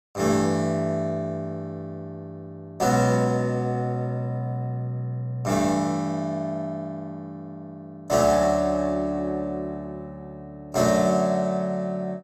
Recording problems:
none

